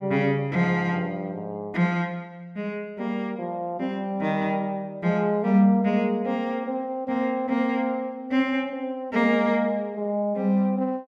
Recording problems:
none

